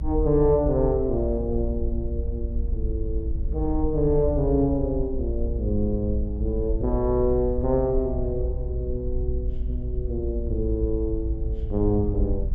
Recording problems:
rumble; below 60 Hz, SNR 4 dB

